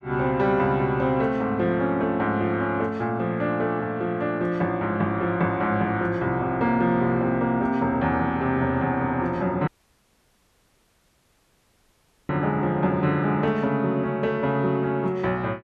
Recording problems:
dropout; at 9.5 s for 2.5 s

